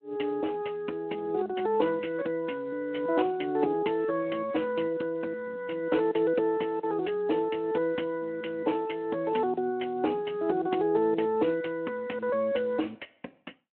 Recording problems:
telephone audio; 240 Hz to 3.2 kHz, Speex

